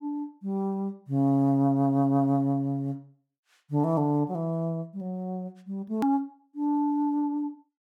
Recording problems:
hard cut with a click; at 6 s

